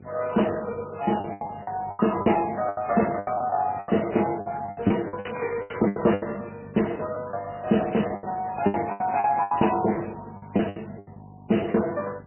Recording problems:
codec artefacts; Speex, then MP3, log-spectral distance 7 dB, nothing above 3 kHz
electrical hum; 50 Hz, harmonics up to 450 Hz, SNR 20 dB
lost packets; 15% of the sound replaced, filled with the last packet
crackling; at 5 s; loose cable, SNR 12 dB

